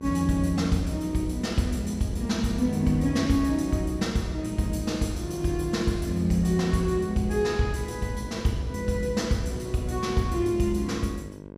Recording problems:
electrical hum; 50 Hz, harmonics up to 1.1 kHz, SNR 16 dB

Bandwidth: 14.5 kHz